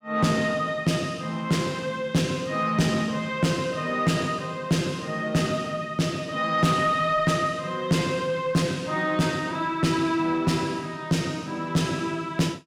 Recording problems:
distortion; soft clipping, signal-to-distortion ratio 11 dB

